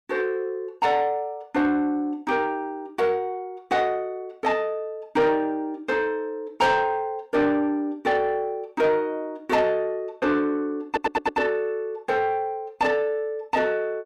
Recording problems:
distortion; soft clipping, signal-to-distortion ratio 12 dB
audio stuttering; at 11 s

